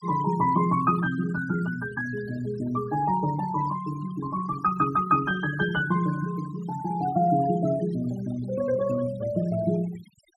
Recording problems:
denoising artefacts; signal-to-artefact ratio 17 dB

